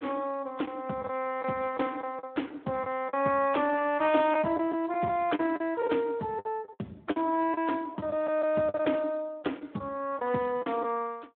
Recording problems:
phone line; 220 Hz to 3.4 kHz, Speex
lost packets; 8% of the sound replaced, filled with the last packet

